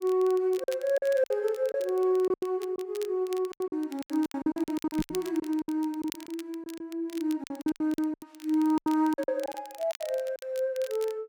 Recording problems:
crackle; vinyl, SNR 19 dB
lost packets; 15% of the sound replaced, filled with silence
microphone bump; at 5 s; peak 0 dB vs average level

